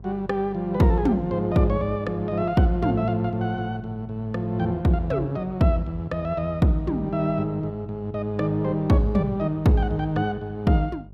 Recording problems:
electrical hum; 50 Hz, harmonics up to 600 Hz, SNR 21 dB

